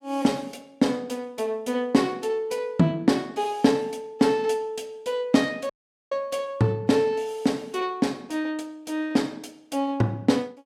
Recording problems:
audio cutting out; at 5.5 s

